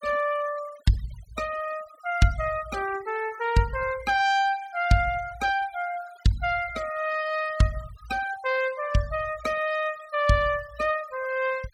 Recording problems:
noise reduction artefacts; signal-to-artefact ratio 19 dB

